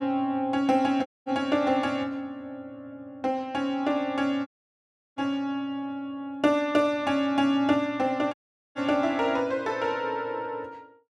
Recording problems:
dropout; at 1 s, at 4.5 s for 0.5 s and at 8.5 s

